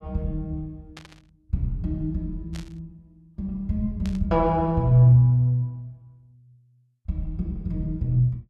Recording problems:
burst of static; at 1 s, at 2.5 s and at 4 s; peak -14 dB vs average level

